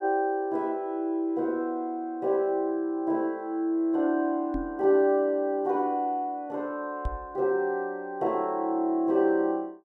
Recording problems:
microphone bump; at 4.5 s and at 7 s; peak -1 dB vs average level

